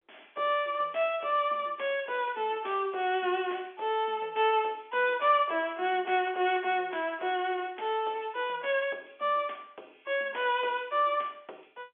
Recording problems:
telephone audio; 300 Hz to 3.4 kHz, G.711

